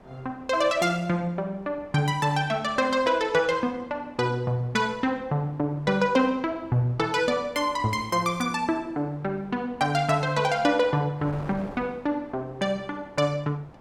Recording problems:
wind on the microphone; below 880 Hz, SNR 22 dB

